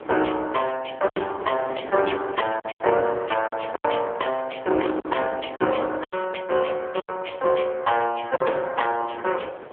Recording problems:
telephone audio; 320 Hz to 3 kHz, AMR-NB
wind noise; below 890 Hz, SNR 16 dB
lost packets; 6% of the sound replaced, filled with silence

